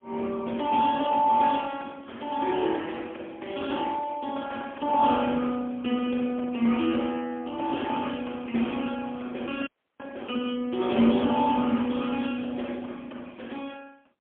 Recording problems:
telephone audio; 190 Hz to 3.4 kHz, AMR-NB, then MP3
audio cutting out; at 9.5 s

